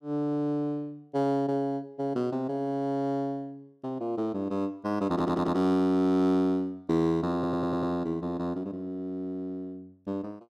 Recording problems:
stutter; at 5 s and at 7.5 s

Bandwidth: 13.5 kHz